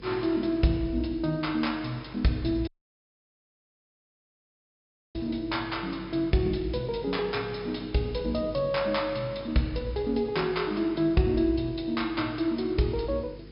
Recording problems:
low-pass filter; nothing above 5.5 kHz
hum; 50 Hz, harmonics up to 500 Hz, SNR 19 dB
hiss; SNR 30 dB
audio cutting out; at 2.5 s for 2.5 s

